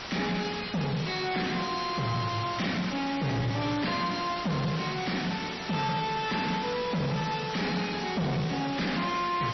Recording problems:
lossy compression; MP3, log-spectral distance 12 dB, nothing above 5.8 kHz
distorted audio; soft clipping, signal-to-distortion ratio 5 dB
background hiss; slope -3 dB per octave, SNR 3 dB

